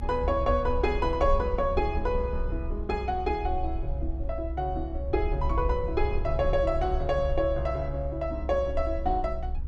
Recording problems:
rumble; below 66 Hz, SNR 4 dB

